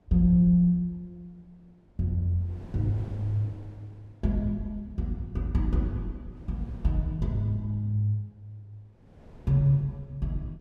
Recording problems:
wind noise; below 330 Hz, SNR 23 dB

